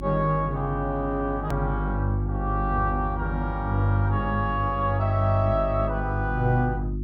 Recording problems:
hum; 50 Hz, harmonics up to 350 Hz, SNR 5 dB
hard cut with a click; at 1.5 s

